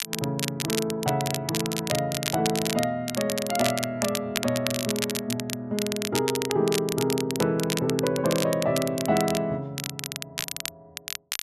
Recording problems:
crackling; vinyl, SNR 5 dB

